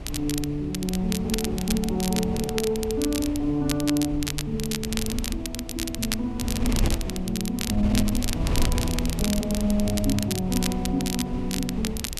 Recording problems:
wind noise; below 120 Hz, SNR 6 dB
crackle; vinyl, SNR 5 dB

